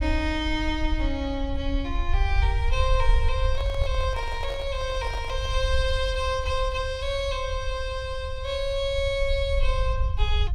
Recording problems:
rumble; below 64 Hz, SNR 2 dB
handling noise; from 3.5 to 5.5 s; peak -6 dB vs average level

